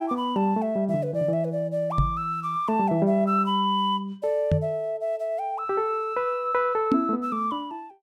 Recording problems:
knock on the microphone; at 2 s, at 4.5 s and at 7 s; peak +6 dB vs average level

